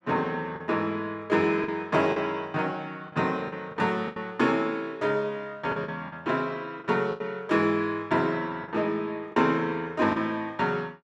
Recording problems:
packet loss; 6% of the sound replaced, filled with the last packet

